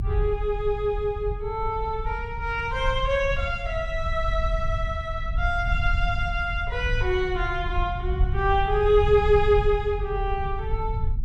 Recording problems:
rumble; below 74 Hz, SNR 5 dB

